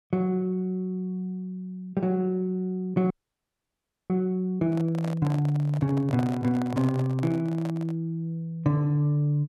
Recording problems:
frozen audio; at 3 s for 1 s
handling noise; from 4.5 to 8 s; peak -4 dB vs average level

